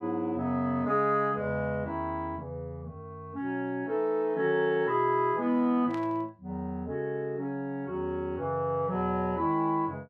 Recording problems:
static burst; at 6 s; peak -12 dB vs average level

